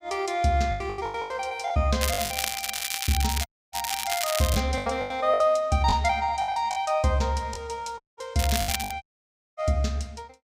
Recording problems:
lost packets; 11% of the sound replaced, filled with the last packet
crackle; from 2 to 4.5 s and at 8.5 s; loose cable, SNR 3 dB
dropout; at 3.5 s, at 8 s and at 9 s for 0.5 s

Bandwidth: 15.5 kHz